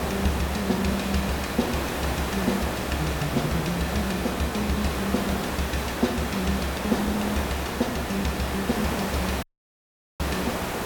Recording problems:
electrical hum; 60 Hz, harmonics up to 720 Hz, SNR 13 dB
background hiss; slope -6 dB per octave, SNR 2 dB
dropout; at 9.5 s for 1 s

